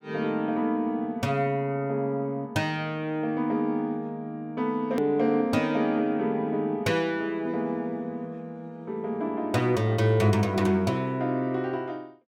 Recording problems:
click at an edit; at 5 s

